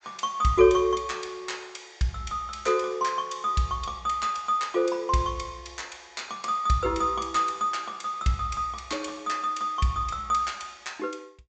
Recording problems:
treble missing; nothing above 8 kHz

